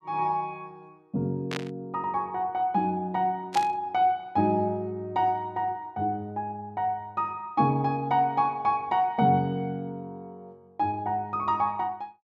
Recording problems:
static burst; at 1.5 s and at 3.5 s; peak -2 dB vs average level

